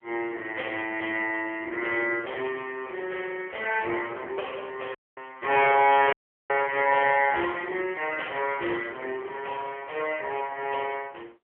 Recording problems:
telephone audio; 300 Hz to 3.1 kHz, AMR-NB
audio cutting out; at 5 s and at 6 s

